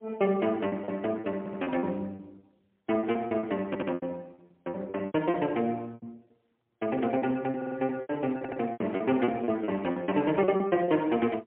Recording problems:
phone line; 240 Hz to 3.1 kHz, AMR-NB, then MP3
lost packets; 17% of the sound replaced, filled with repeated pitch periods
stutter; 4 times, first at 1.5 s

